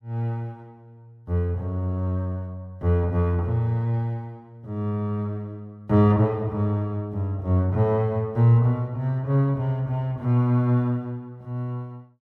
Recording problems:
none

